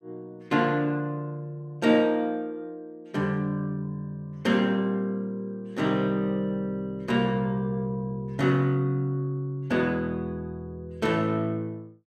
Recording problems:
none

